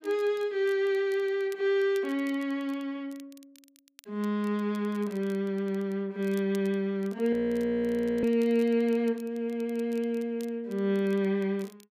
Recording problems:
crackle; vinyl, SNR 27 dB
audio freezing; at 7.5 s for 1 s

